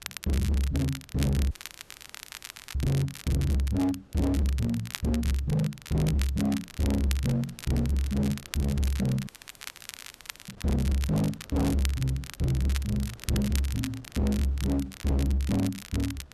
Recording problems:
distorted audio; hard clipping, signal-to-distortion ratio 8 dB
wind noise; below 540 Hz, SNR 27 dB
crackling; vinyl, SNR 13 dB
audio cutting out; at 1.5 s for 1 s and at 9.5 s for 1 s

